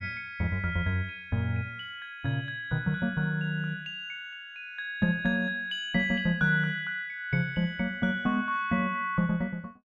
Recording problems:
none

